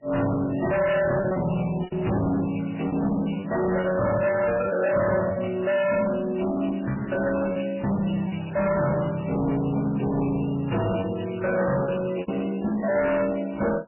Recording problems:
lossy compression; AAC, then MP3, log-spectral distance 7 dB, nothing above 2.9 kHz
distortion; hard clipping, signal-to-distortion ratio 7 dB
lost packets; 5% of the sound replaced, filled with repeated pitch periods

